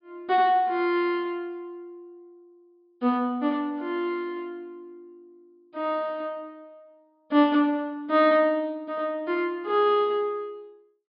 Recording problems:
treble cut off; nothing above 5.5 kHz

